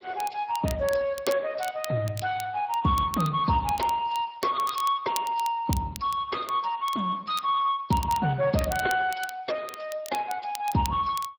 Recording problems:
lossy codec; MP3, then Speex, log-spectral distance 4 dB
crackling; vinyl, SNR 15 dB

